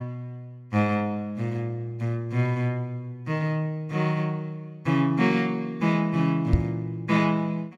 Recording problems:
knock on the microphone; at 6.5 s; peak +10 dB vs average level

